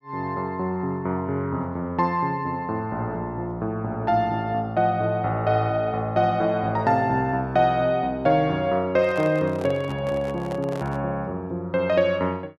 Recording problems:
microphone handling noise; from 9 to 11 s; peak -8 dB vs average level

